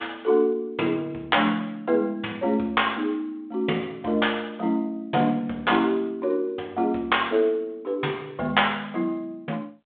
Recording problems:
phone line; 280 Hz to 3.6 kHz, G.726

